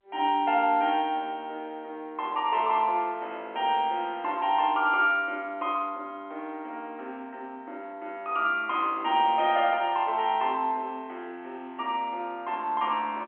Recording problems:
phone line; 260 Hz to 3.6 kHz, G.711

